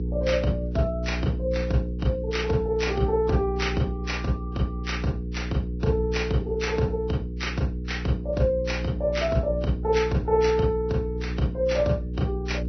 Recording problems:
treble missing; nothing above 6 kHz
lossy codec; Vorbis, log-spectral distance 2 dB
hum; 60 Hz, harmonics up to 480 Hz, SNR 5 dB

